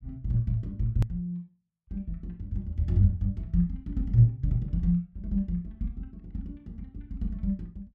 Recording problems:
edit click; at 1 s

